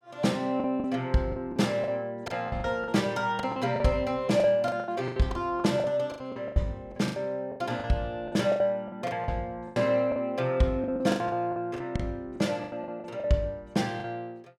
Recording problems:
lost packets; 16% of the sound replaced, filled with the last packet

